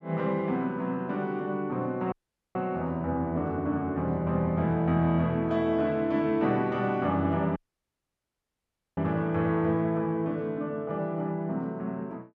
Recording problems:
audio cutting out; at 2 s and at 7.5 s for 1.5 s

